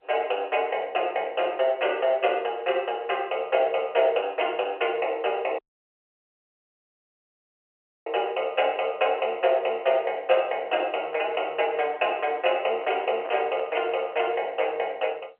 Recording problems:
telephone audio; 320 Hz to 3.1 kHz, G.711
dropout; at 5.5 s for 2.5 s
handling noise; from 11 to 14 s; peak -9 dB vs average level

